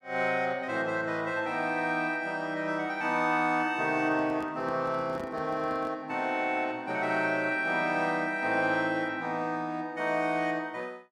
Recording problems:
handling noise; from 4 to 6 s; peak -9 dB vs average level

